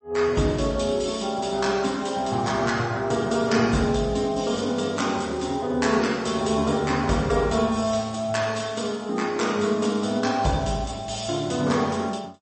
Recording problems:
codec artefacts; MP3, log-spectral distance 5 dB, nothing above 8.2 kHz

